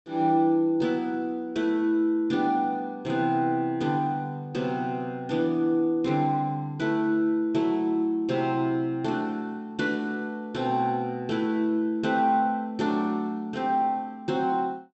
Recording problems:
treble missing; nothing above 7.9 kHz

